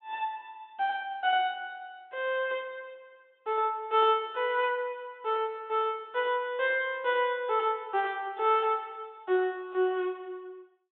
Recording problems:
treble cut off; nothing above 3.8 kHz

